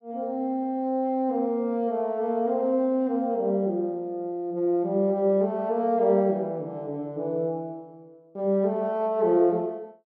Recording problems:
none

